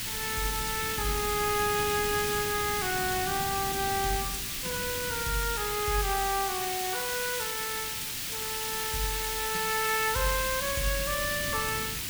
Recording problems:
background hiss; SNR 0 dB
wind noise; below 250 Hz, SNR 13 dB

